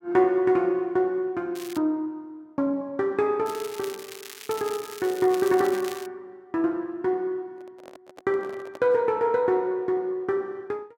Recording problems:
crackling; at 1.5 s and from 3.5 to 6 s; loose cable, SNR 15 dB
handling noise; from 7.5 to 9 s; peak -12 dB vs average level

